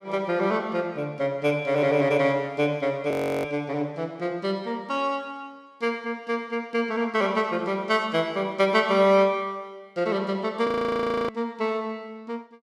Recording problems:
audio freezing; at 3 s and at 11 s for 0.5 s

